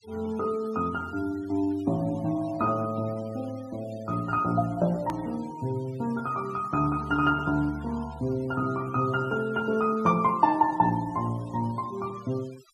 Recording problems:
denoising artefacts; signal-to-artefact ratio 22 dB
edit click; at 5 s

